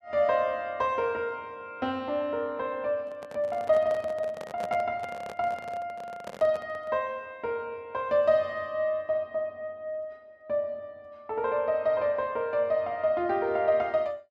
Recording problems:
microphone handling noise; from 3 to 7 s; peak -5 dB vs average level

